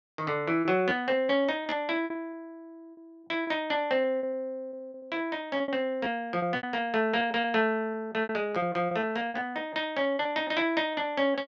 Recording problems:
lost packets; 14% of the sound replaced, filled with repeated pitch periods

